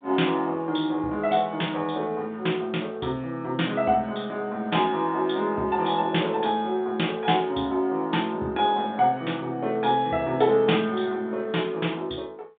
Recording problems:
telephone audio; 190 Hz to 3.6 kHz, G.726

